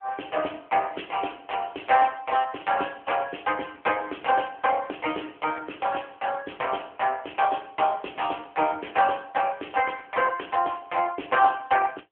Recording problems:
telephone audio; 240 Hz to 3.3 kHz, AMR-NB

